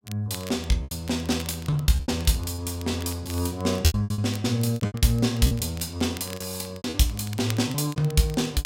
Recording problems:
crackle; vinyl, SNR 18 dB
lost packets; 12% of the sound replaced, filled with repeated pitch periods

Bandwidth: 16 kHz